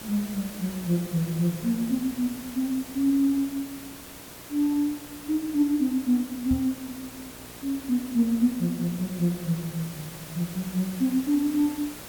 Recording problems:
mains hum; 60 Hz, harmonics up to 1.8 kHz, SNR 23 dB
hiss; slope -2 dB per octave, SNR 14 dB
knock on the microphone; at 6.5 s; peak -1 dB vs average level

